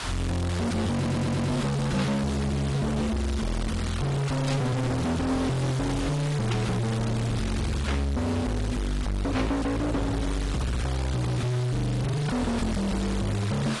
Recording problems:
lossy codec; AAC, log-spectral distance 5 dB, nothing above 11 kHz
distorted audio; hard clipping, uneven, signal-to-distortion ratio 5 dB
background hiss; SNR 8 dB
stutter; at 1 s
static burst; 5 times, first at 2 s; peak -3 dB vs average level

